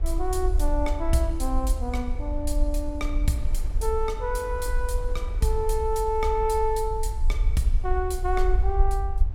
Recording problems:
low-frequency rumble; below 52 Hz, SNR 1 dB
wind noise; below 720 Hz, SNR 21 dB

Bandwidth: 16.5 kHz